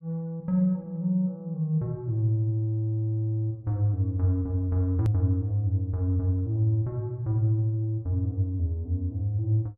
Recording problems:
hard cut with a click; at 5 s

